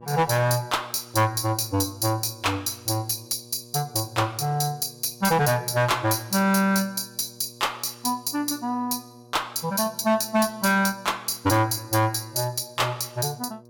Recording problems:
distorted audio; hard clipping, uneven, signal-to-distortion ratio 11 dB
hum; 60 Hz, harmonics up to 1.2 kHz, SNR 24 dB

